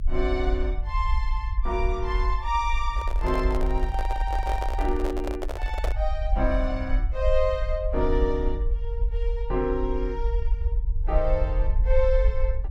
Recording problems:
rumble; below 52 Hz, SNR 0 dB
handling noise; from 3 to 6 s; peak +1 dB vs average level

